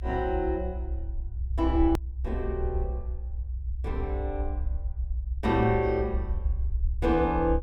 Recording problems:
rumble; below 66 Hz, strongest tone 62 Hz, SNR 4 dB
hard cut with a click; at 2 s

